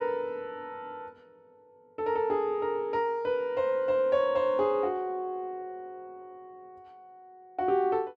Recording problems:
none

